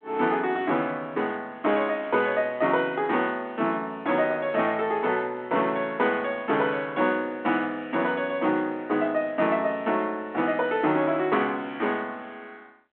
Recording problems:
telephone audio; 170 Hz to 3.5 kHz, G.726

